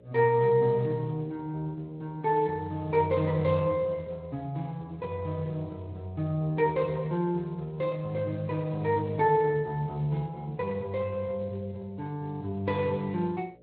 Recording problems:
lossy compression; Speex, log-spectral distance 2 dB
hum; 60 Hz, harmonics up to 600 Hz, SNR 26 dB

